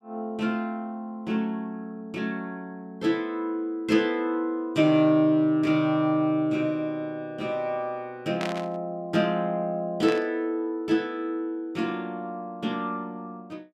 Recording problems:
static burst; at 8.5 s and at 10 s; peak -3 dB vs average level

